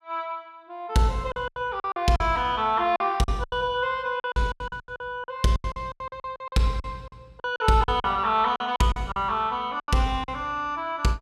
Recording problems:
lost packets; 15% of the sound replaced, filled with silence

